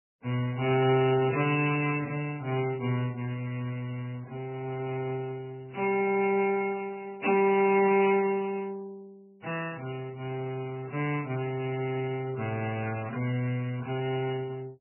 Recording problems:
lossy compression; MP3, then Vorbis, log-spectral distance 3 dB, nothing above 2.7 kHz

